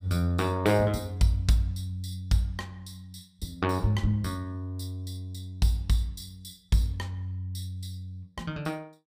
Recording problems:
none

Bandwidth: 15.5 kHz